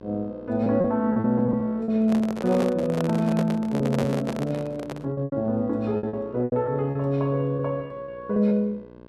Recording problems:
hum; 60 Hz, harmonics up to 1.7 kHz, SNR 20 dB
packet loss; 10% of the sound replaced, filled with repeated pitch periods
handling noise; from 2 to 5 s; peak 0 dB vs average level

